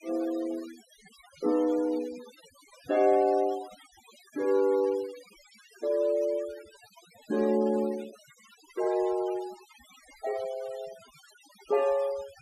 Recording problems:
noise reduction artefacts; signal-to-artefact ratio 21 dB

